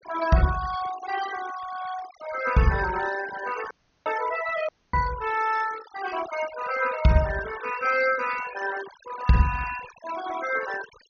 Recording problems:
low-pass filter; nothing above 6.5 kHz
denoising artefacts; signal-to-artefact ratio 12 dB
dropout; at 3.5 s and at 4.5 s

